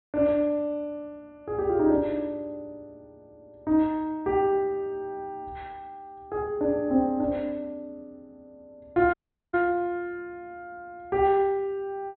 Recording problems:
low-pass filter; nothing above 4.2 kHz
audio cutting out; at 9 s

